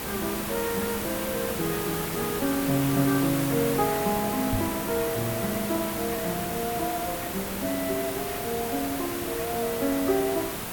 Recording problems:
background hiss; slope -4 dB per octave, SNR 3 dB
microphone bump; at 4.5 s; peak +1 dB vs average level

